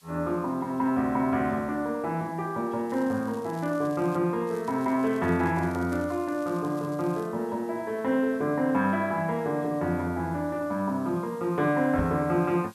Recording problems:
hiss; slope +2 dB per octave, SNR 29 dB
crackle; from 3 to 4 s and from 4.5 to 7.5 s; loose cable, SNR 26 dB
microphone thump; at 12 s; peak -2 dB vs average level

